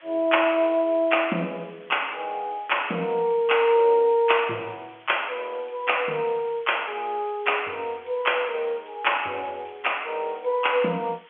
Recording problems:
phone line; 240 Hz to 3.4 kHz, G.711
hiss; SNR 28 dB

